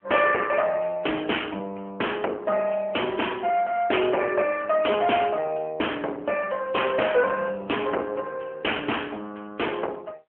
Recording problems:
phone line; 280 Hz to 3.1 kHz, AMR-NB
distorted audio; soft clipping, signal-to-distortion ratio 12 dB

